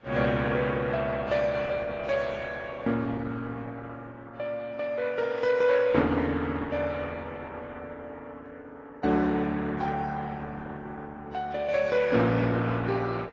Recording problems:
codec artefacts; Opus, then AAC, log-spectral distance 3 dB, nothing above 7.3 kHz

